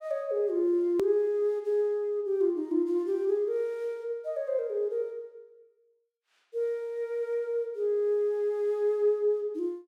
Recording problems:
hard cut with a click; at 1 s

